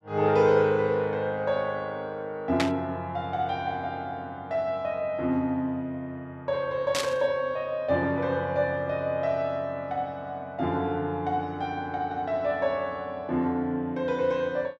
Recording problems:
burst of static; at 2.5 s and at 7 s; peak +4 dB vs average level

